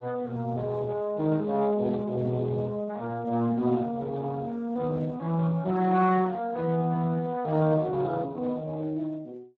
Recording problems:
codec artefacts; Speex, log-spectral distance 3 dB

